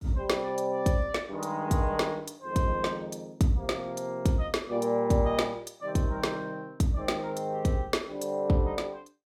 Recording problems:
none

